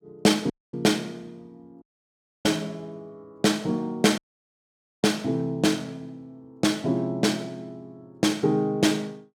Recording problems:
audio cutting out; at 0.5 s, at 2 s for 0.5 s and at 4 s for 1 s

